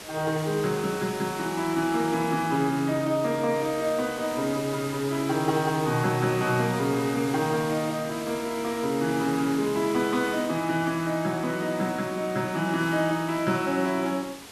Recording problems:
hiss; slope -2 dB per octave, SNR 13 dB

